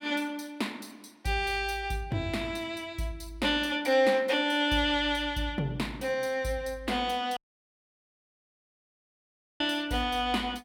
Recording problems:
dropout; at 7.5 s for 2 s

